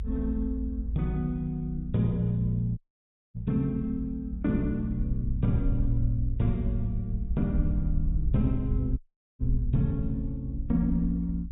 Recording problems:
treble missing; nothing above 4 kHz
rumble; below 64 Hz, SNR 4 dB
dropout; at 3 s for 0.5 s and at 9 s

